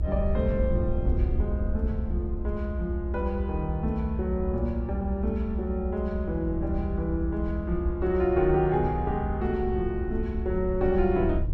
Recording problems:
low-frequency rumble; below 78 Hz, SNR 3 dB

